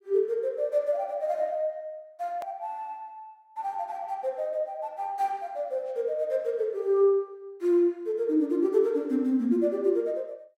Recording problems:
hard cut with a click; at 2.5 s

